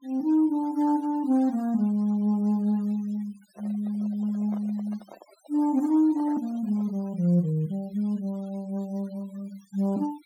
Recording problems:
denoising artefacts; signal-to-artefact ratio 26 dB
handling noise; from 3.5 to 7 s; peak -13 dB vs average level

